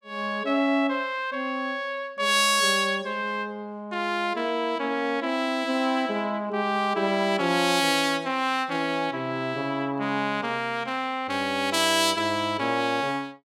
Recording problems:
none

